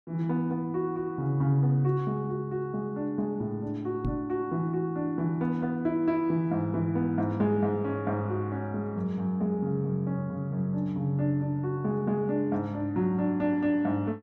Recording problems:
knock on the microphone; at 4 s; peak +1 dB vs average level

